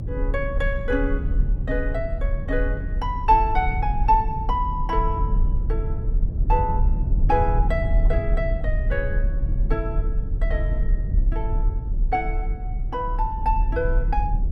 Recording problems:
low-frequency rumble; below 58 Hz, strongest tone 34 Hz, SNR -1 dB

